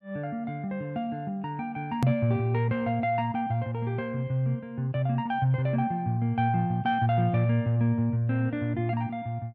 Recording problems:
hard cut with a click; at 2 s

